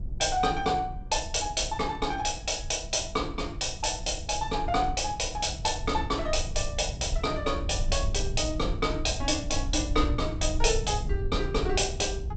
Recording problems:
lossy codec; G.722, log-spectral distance 5 dB, nothing above 8 kHz
rumble; below 78 Hz, SNR 7 dB

